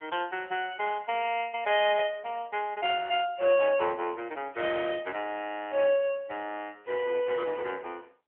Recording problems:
telephone audio; 320 Hz to 3.3 kHz, AMR-NB

